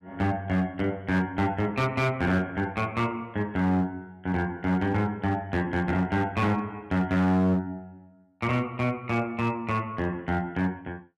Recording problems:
distortion; hard clipping, signal-to-distortion ratio 11 dB

